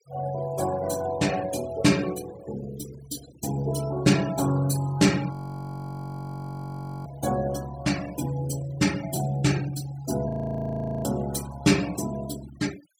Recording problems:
denoising artefacts; signal-to-artefact ratio 16 dB
audio freezing; at 5.5 s for 1.5 s and at 10 s for 1 s

